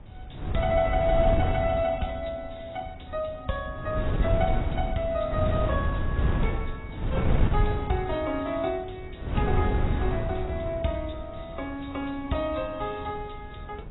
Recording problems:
lossy compression; AAC, log-spectral distance 4 dB, nothing above 3.8 kHz
wind on the microphone; below 160 Hz, SNR -1 dB

